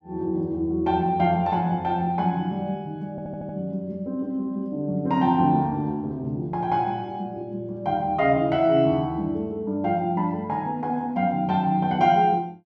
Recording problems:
audio stuttering; at 3 s

